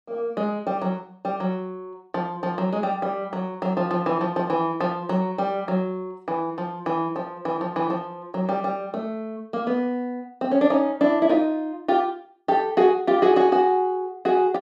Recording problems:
none

